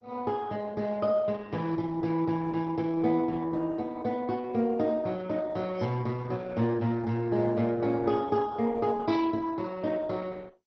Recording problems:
lossy codec; MP2, then Opus, log-spectral distance 3 dB

